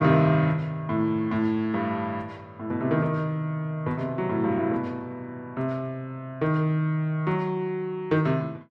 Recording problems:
none

